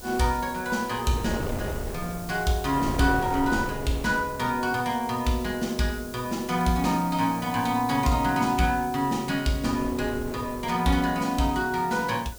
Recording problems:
background hiss; slope +6 dB per octave, SNR 18 dB
wind noise; below 500 Hz, SNR 11 dB

